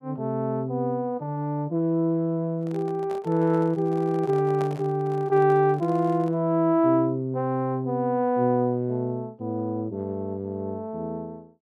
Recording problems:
microphone handling noise; from 2.5 to 6.5 s; peak -8 dB vs average level

